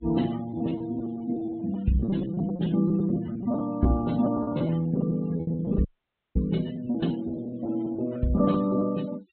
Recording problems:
low-pass filter; nothing above 4 kHz
denoising artefacts; signal-to-artefact ratio 21 dB
packet loss; 14% of the sound replaced, filled with repeated pitch periods
audio cutting out; at 6 s for 0.5 s

